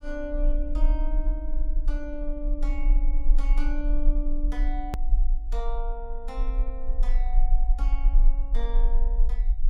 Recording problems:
low-frequency rumble; below 36 Hz, strongest tone 24 Hz, SNR -10 dB
click at an edit; at 5 s

